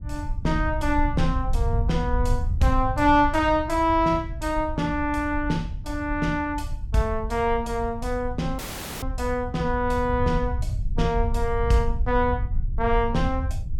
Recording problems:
rumble; below 82 Hz, SNR 5 dB
audio cutting out; at 8.5 s

